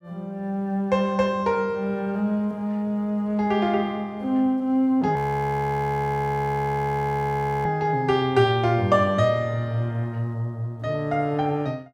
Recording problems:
audio freezing; at 5 s for 2.5 s

